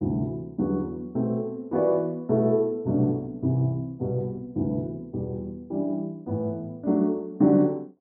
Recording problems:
none

